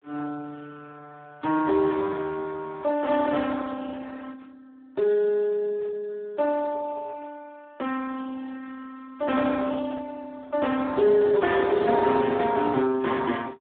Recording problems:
telephone audio; 170 Hz to 2.3 kHz, Speex

